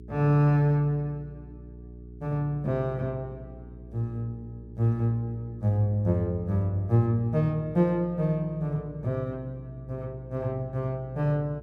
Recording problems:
mains hum; 60 Hz, harmonics up to 420 Hz, SNR 18 dB

